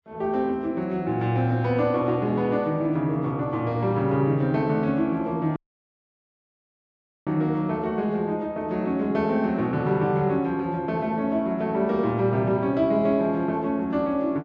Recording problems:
dropout; at 5.5 s for 1.5 s

